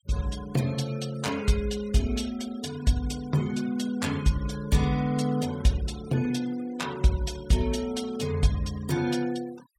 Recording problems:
denoising artefacts; signal-to-artefact ratio 18 dB

